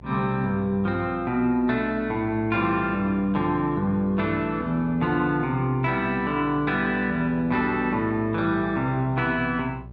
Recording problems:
hum; 60 Hz, harmonics up to 780 Hz, SNR 19 dB

